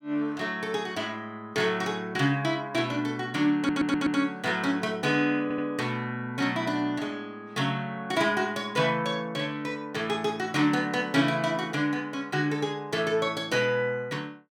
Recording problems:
stutter; at 3.5 s and at 5.5 s

